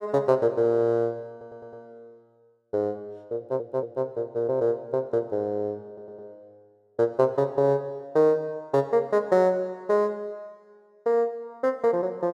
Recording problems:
audio stuttering; at 1.5 s, at 3.5 s and at 6 s

